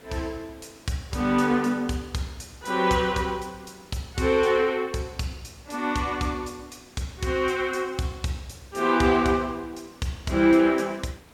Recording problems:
background hiss; slope -5 dB per octave, SNR 27 dB

